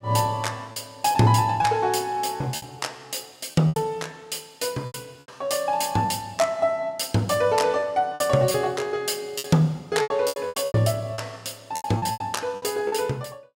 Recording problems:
packet loss; 10% of the sound replaced, filled with repeated pitch periods

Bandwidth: 16 kHz